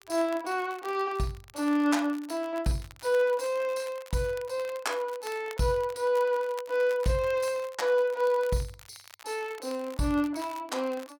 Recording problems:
crackle; vinyl, SNR 21 dB

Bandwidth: 17 kHz